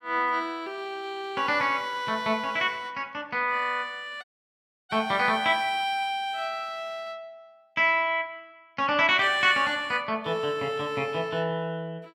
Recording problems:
dropout; at 4 s for 0.5 s

